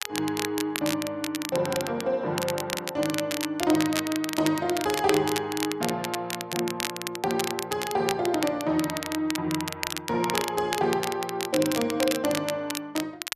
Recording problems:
crackle; vinyl, SNR 5 dB

